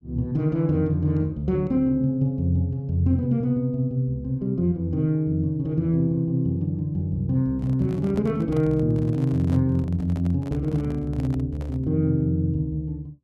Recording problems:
microphone handling noise; from 7.5 to 12 s; peak -11 dB vs average level

